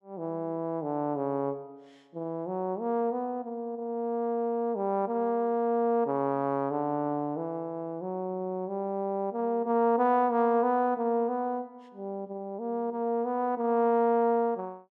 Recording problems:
none

